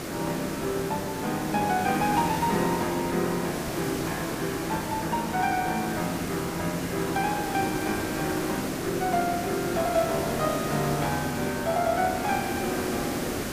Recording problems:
hiss; SNR 4 dB

